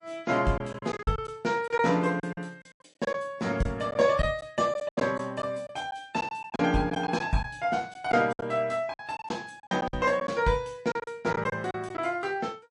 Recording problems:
lossy codec; MP3, log-spectral distance 2 dB, nothing above 10.1 kHz
lost packets; 10% of the sound replaced, filled with silence

